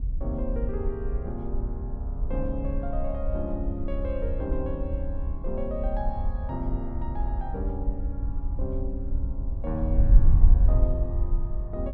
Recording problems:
wind on the microphone; below 58 Hz, SNR -6 dB

